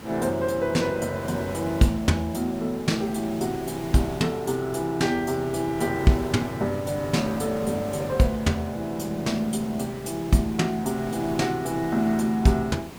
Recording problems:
background hiss; slope -5 dB per octave, SNR 14 dB

